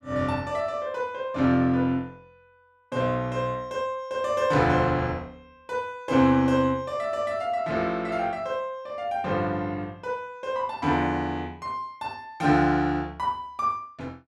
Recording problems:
none

